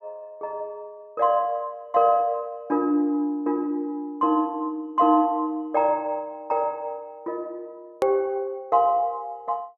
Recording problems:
edit click; at 8 s

